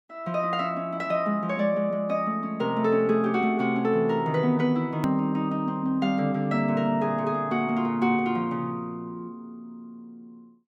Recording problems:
hard cut with a click; at 5 s

